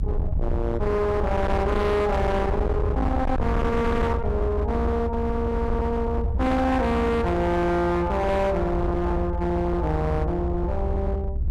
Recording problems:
distorted audio; hard clipping, signal-to-distortion ratio 7 dB
rumble; below 110 Hz, SNR 3 dB

